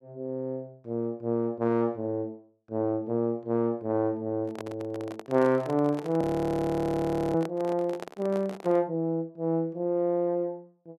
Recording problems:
handling noise; from 4.5 to 9 s; peak -6 dB vs average level
audio freezing; at 6 s for 1 s

